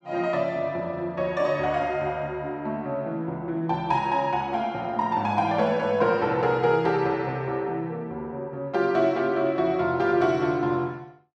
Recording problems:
none

